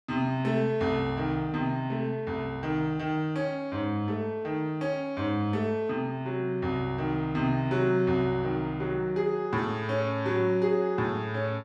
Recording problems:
none

